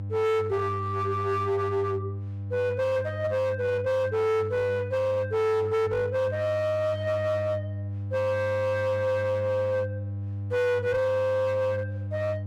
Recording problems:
distorted audio; hard clipping, uneven, signal-to-distortion ratio 10 dB
hum; 50 Hz, harmonics up to 500 Hz, SNR 8 dB

